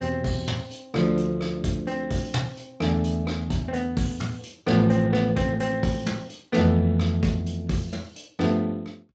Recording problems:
codec artefacts; Speex, log-spectral distance 3 dB, nothing above 7.3 kHz

